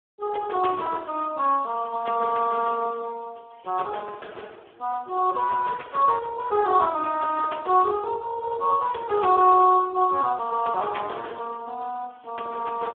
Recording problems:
telephone audio; 320 Hz to 2 kHz, Speex

